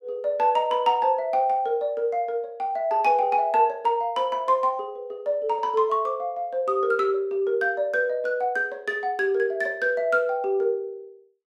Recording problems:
none

